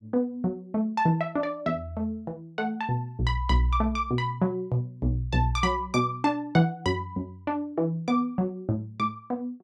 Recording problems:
none

